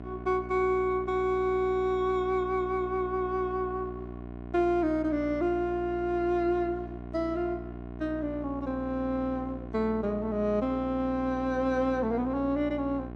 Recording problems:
hum; 60 Hz, harmonics up to 1.1 kHz, SNR 12 dB

